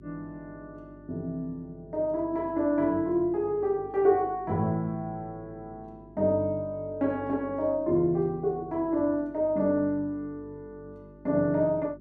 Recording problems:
hum; 50 Hz, harmonics up to 400 Hz, SNR 23 dB

